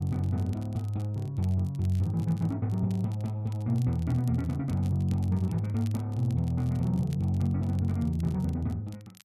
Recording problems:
crackle; vinyl, SNR 27 dB

